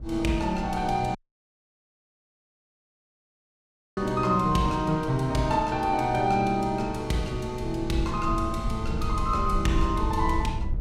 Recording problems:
rumble; below 88 Hz, SNR 9 dB
dropout; at 1 s for 3 s

